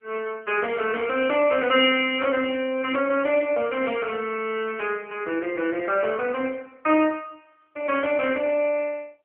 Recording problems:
phone line; 280 Hz to 3 kHz, AMR-NB

